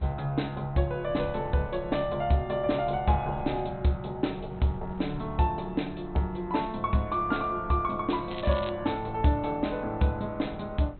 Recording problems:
low-pass filter; nothing above 4.1 kHz
wind noise; below 170 Hz, SNR 17 dB
crackle; at 8.5 s; loose cable, SNR 15 dB

